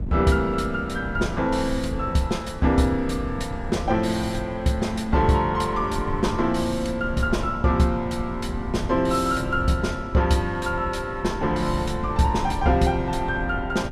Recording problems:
wind on the microphone; below 130 Hz, SNR 10 dB

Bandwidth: 14.5 kHz